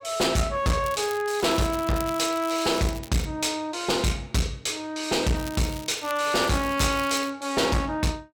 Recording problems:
distortion; hard clipping, uneven, signal-to-distortion ratio 7 dB
crackling; from 1 to 3.5 s and from 5.5 to 7.5 s; loose cable, SNR 16 dB

